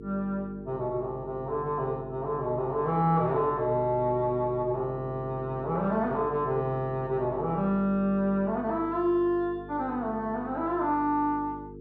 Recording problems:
mains hum; 50 Hz, harmonics up to 450 Hz, SNR 14 dB

